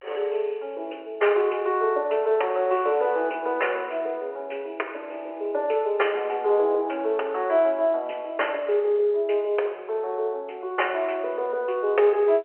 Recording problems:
telephone audio; 340 Hz to 3.1 kHz, G.711

